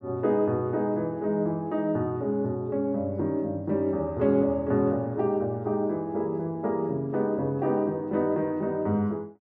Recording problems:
none

